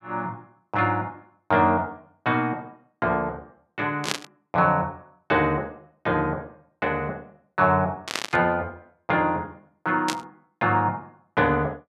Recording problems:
static burst; at 4 s, at 8 s and at 10 s; peak +4 dB vs average level

